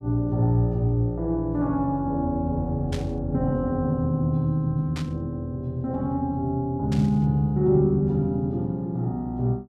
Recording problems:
static burst; at 3 s, at 5 s and at 7 s; peak -8 dB vs average level

